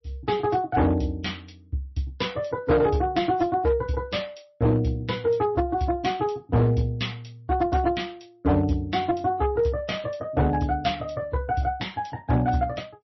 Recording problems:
codec artefacts; MP3, log-spectral distance 2 dB, nothing above 5.8 kHz
distortion; hard clipping, signal-to-distortion ratio 12 dB

